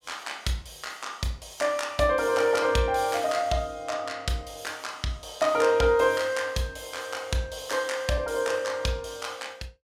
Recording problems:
none

